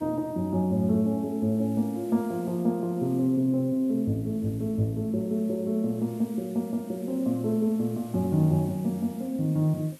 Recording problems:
background hiss; slope -1 dB per octave, SNR 26 dB

